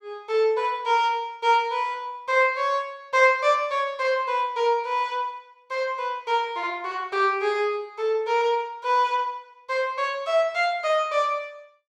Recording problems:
none

